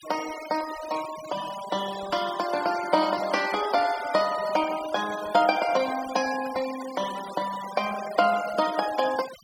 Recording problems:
denoising artefacts; signal-to-artefact ratio 13 dB

